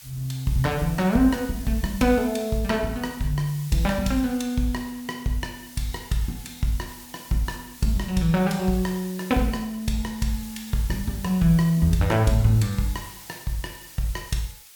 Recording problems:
hiss; slope +3 dB per octave, SNR 17 dB

